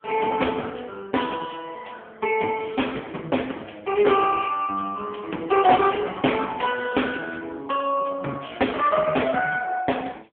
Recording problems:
telephone audio; 280 Hz to 3.3 kHz, AMR-NB

